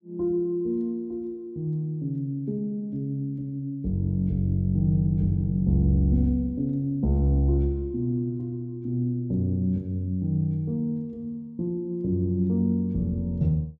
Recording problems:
none

